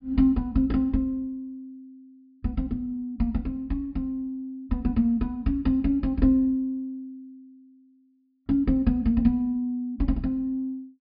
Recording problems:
low-pass filter; nothing above 5.1 kHz

